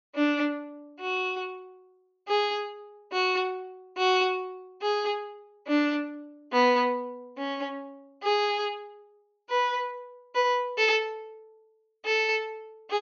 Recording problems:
low-pass filter; nothing above 6.7 kHz

